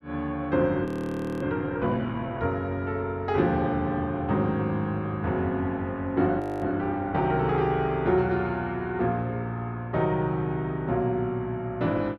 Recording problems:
audio freezing; at 1 s for 0.5 s and at 6.5 s

